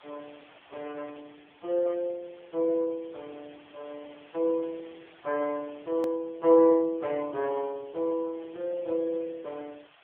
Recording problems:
phone line; 300 Hz to 2 kHz, AMR-NB
hiss; SNR 27 dB
edit click; at 6 s

